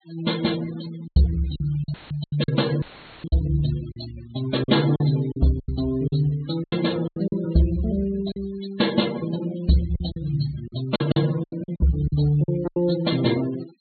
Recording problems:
low-pass filter; nothing above 4.3 kHz
noise reduction artefacts; signal-to-artefact ratio 17 dB
lost packets; 10% of the sound replaced, filled with silence
dropout; at 2 s and at 3 s; filled with static

